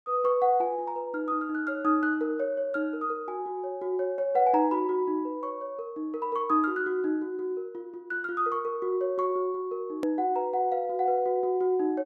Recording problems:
click at an edit; at 10 s

